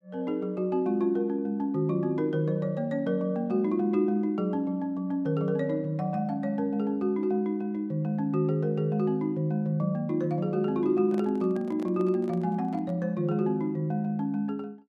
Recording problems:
handling noise; from 11 to 13 s; peak -10 dB vs average level

